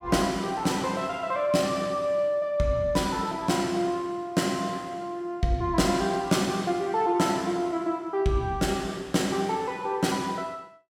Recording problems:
none

